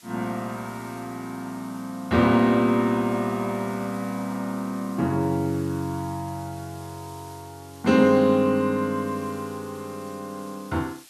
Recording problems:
hiss; slope +3 dB per octave, SNR 23 dB

